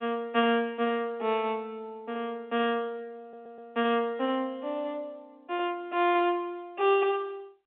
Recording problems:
phone line; 260 Hz to 3.7 kHz, G.711
stutter; at 3 s

